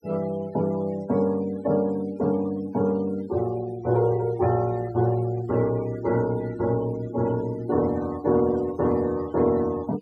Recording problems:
denoising artefacts; signal-to-artefact ratio 21 dB

